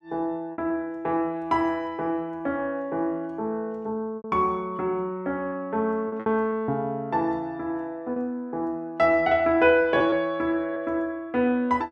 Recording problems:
packet loss; 4% of the sound replaced, filled with repeated pitch periods

